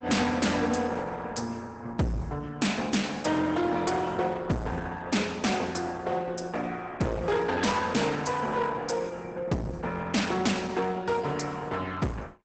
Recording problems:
codec artefacts; Opus, log-spectral distance 4 dB, nothing above 8 kHz
distortion; hard clipping, uneven, signal-to-distortion ratio 5 dB

